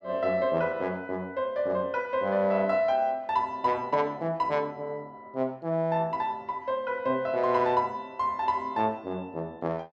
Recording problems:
none

